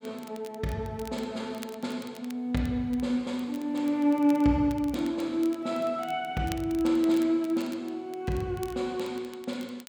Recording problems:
crackling; vinyl, SNR 22 dB

